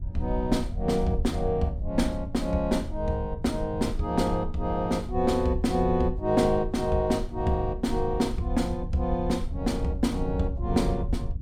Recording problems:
rumble; below 76 Hz, SNR 8 dB

